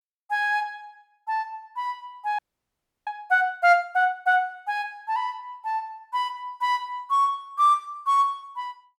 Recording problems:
frozen audio; at 2.5 s for 0.5 s

